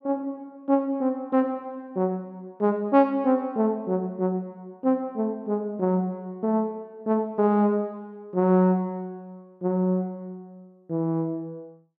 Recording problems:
none

